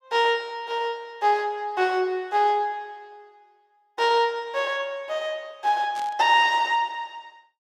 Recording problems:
burst of static; at 6 s; peak -13 dB vs average level

